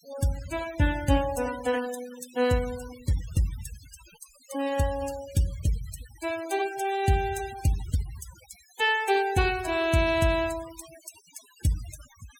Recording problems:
noise reduction artefacts; signal-to-artefact ratio 16 dB

